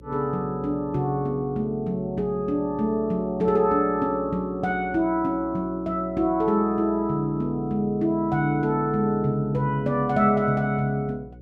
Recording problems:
hum; 60 Hz, harmonics up to 540 Hz, SNR 21 dB

